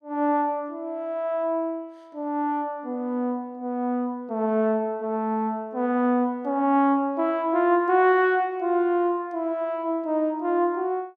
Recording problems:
none

